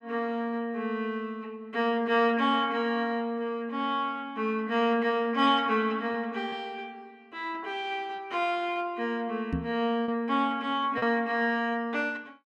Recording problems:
packet loss; 1.2% of the sound replaced, filled with repeated pitch periods
microphone thump; at 9.5 s; peak +2 dB vs average level

